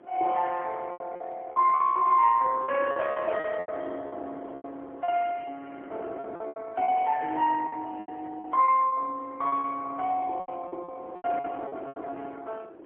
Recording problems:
phone line; 300 Hz to 3.8 kHz, AMR-NB, then MP3
wind noise; below 550 Hz, SNR 18 dB
lost packets; 12% of the sound replaced, filled with repeated pitch periods

